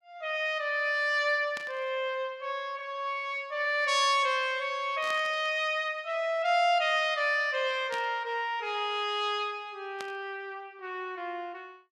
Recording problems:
burst of static; 4 times, first at 1.5 s; peak -7 dB vs average level

